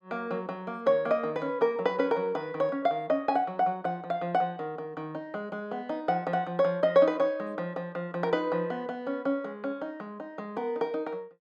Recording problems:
none

